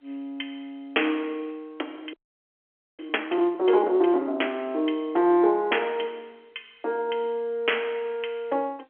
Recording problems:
telephone audio; 280 Hz to 3.3 kHz, G.711
frozen audio; at 2 s for 1 s

